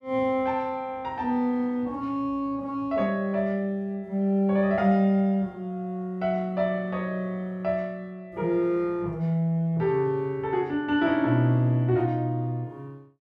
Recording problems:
none

